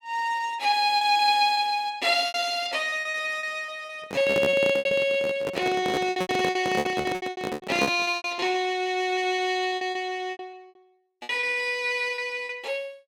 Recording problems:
lost packets; 17% of the sound replaced, filled with repeated pitch periods
microphone handling noise; from 4 to 8 s; peak +3 dB vs average level

